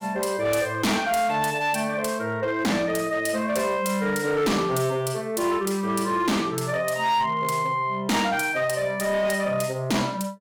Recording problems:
distortion; hard clipping, uneven, signal-to-distortion ratio 10 dB

